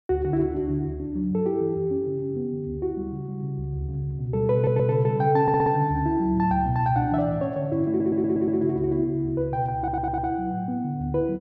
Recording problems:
audio stuttering; 4 times, first at 4.5 s

